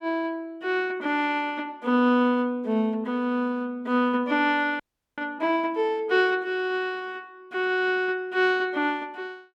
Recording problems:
frozen audio; at 5 s

